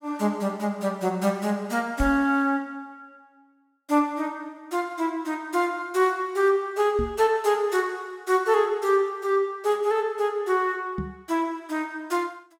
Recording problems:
microphone thump; at 2 s, at 7 s and at 11 s; peak 0 dB vs average level

